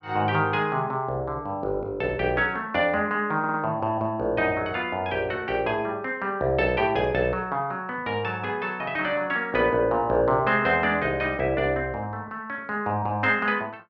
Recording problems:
audio stuttering; at 3.5 s

